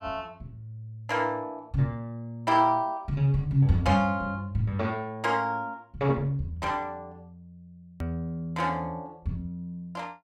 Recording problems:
click at an edit; at 8 s

